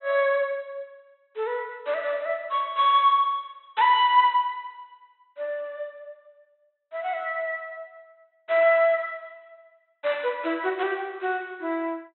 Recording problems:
low-pass filter; nothing above 4 kHz

